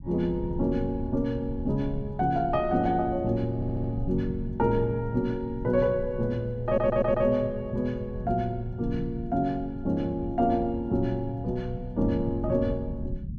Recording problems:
low-frequency rumble; below 140 Hz, SNR 11 dB
audio stuttering; at 3.5 s and at 6.5 s

